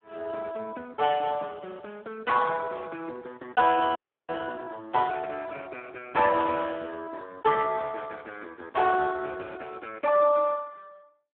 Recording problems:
telephone audio; 280 Hz to 2 kHz, Speex
audio freezing; at 4 s

